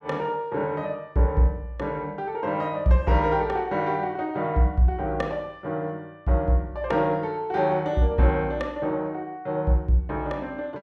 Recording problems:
none

